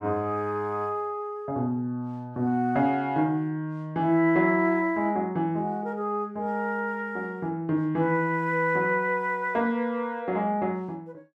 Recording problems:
none

